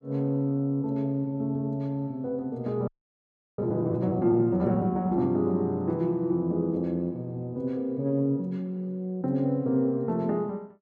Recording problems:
frozen audio; at 3 s for 0.5 s

